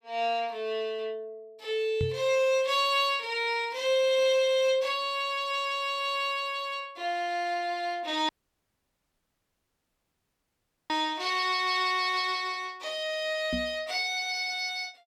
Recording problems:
microphone bump; at 2 s and at 14 s; peak 0 dB vs average level
audio cutting out; at 8.5 s for 2.5 s

